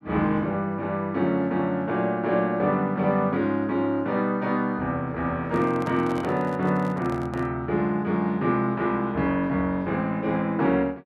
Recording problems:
microphone handling noise; from 5.5 to 7.5 s; peak -8 dB vs average level

